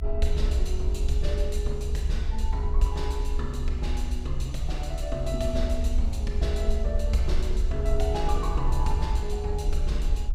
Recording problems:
rumble; below 66 Hz, SNR -3 dB

